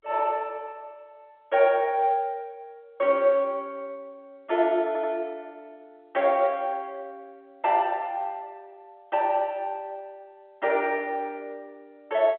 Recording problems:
phone line; 300 Hz to 3.5 kHz, G.711
audio stuttering; at 5 s

